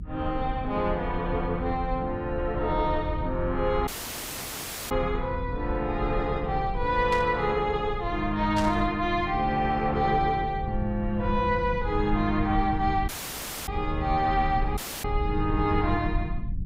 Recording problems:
low-frequency rumble; below 98 Hz, SNR 8 dB
audio cutting out; at 4 s for 1 s, at 13 s for 0.5 s and at 15 s
static burst; at 7 s and at 8.5 s; peak -4 dB vs average level

